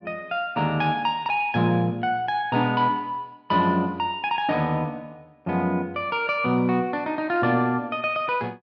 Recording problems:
none

